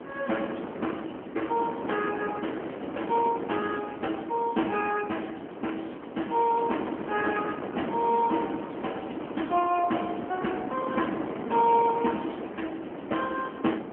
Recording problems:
telephone audio; 220 Hz to 3.2 kHz, AMR-NB
wind noise; below 690 Hz, SNR 7 dB

